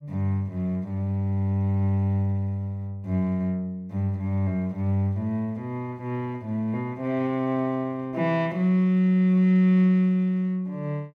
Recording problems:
none

